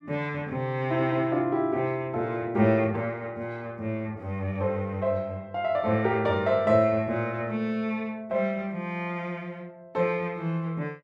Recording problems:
none

